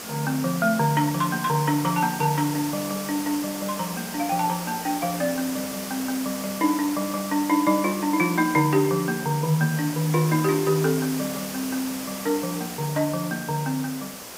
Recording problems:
hiss; slope -3 dB per octave, SNR 9 dB

